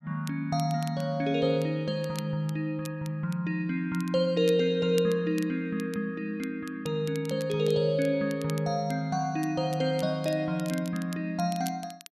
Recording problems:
crackle; vinyl, SNR 20 dB

